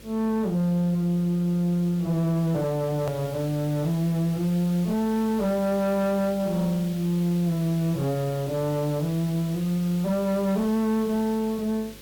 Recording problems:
distorted audio; soft clipping, signal-to-distortion ratio 10 dB
hum; 50 Hz, harmonics up to 550 Hz, SNR 24 dB
background hiss; SNR 19 dB
hard cut with a click; at 3 s

